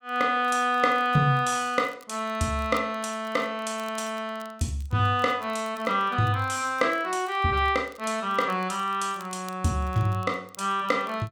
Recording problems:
crackling; vinyl, SNR 27 dB

